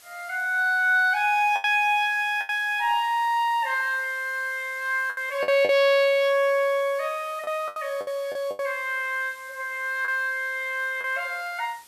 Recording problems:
hiss; slope +1 dB per octave, SNR 24 dB
packet loss; 6% of the sound replaced, filled with the last packet

